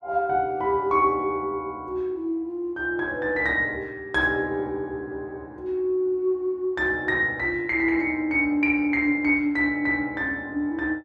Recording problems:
none

